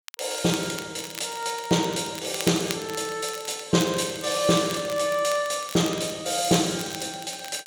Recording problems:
crackle; vinyl, SNR 14 dB

